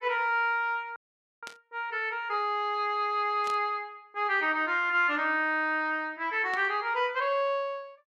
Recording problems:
frozen audio; at 1 s
burst of static; at 1.5 s, at 3.5 s and at 6.5 s; peak -10 dB vs average level

